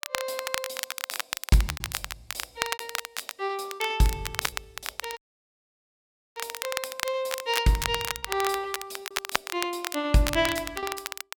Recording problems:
crackling; vinyl, SNR 4 dB
lost packets; 5% of the sound replaced, filled with repeated pitch periods
audio cutting out; at 5 s for 1 s

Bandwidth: 18 kHz